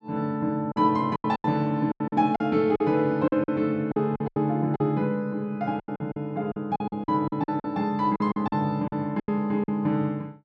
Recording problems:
packet loss; 14% of the sound replaced, filled with silence

